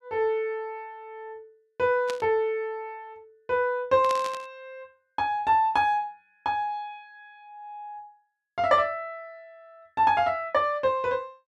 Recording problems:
static burst; at 2 s and at 4 s; peak -5 dB vs average level

